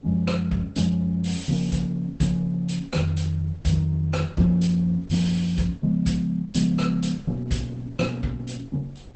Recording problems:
codec artefacts; Opus, log-spectral distance 3 dB, nothing above 8.2 kHz
wind on the microphone; below 230 Hz, SNR 25 dB

